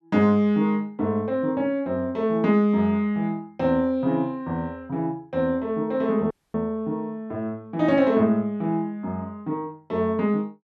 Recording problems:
dropout; at 6.5 s

